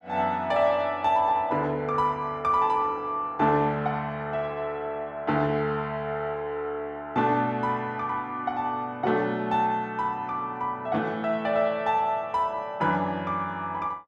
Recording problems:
none

